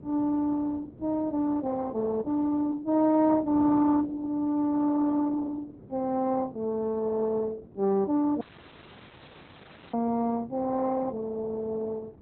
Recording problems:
codec artefacts; Opus, log-spectral distance 4 dB
wind on the microphone; below 360 Hz, SNR 21 dB
audio cutting out; at 8.5 s for 1.5 s

